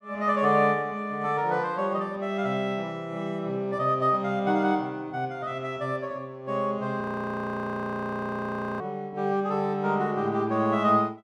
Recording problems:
frozen audio; at 7 s for 2 s

